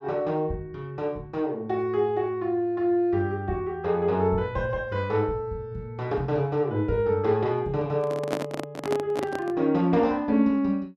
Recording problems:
handling noise; from 8 to 9.5 s; peak +1 dB vs average level

